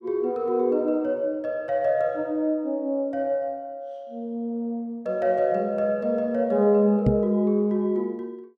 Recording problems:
knock on the microphone; at 7 s; peak +6 dB vs average level

